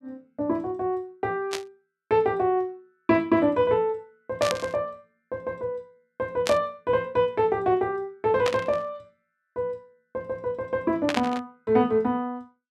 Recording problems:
burst of static; 5 times, first at 1.5 s; peak +2 dB vs average level

